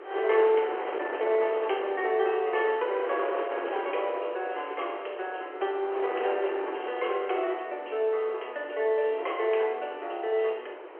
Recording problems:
telephone audio; 320 Hz to 3.2 kHz, G.711
wind on the microphone; below 1 kHz, SNR 8 dB

